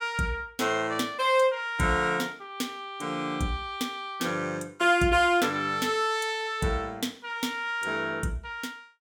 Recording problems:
none

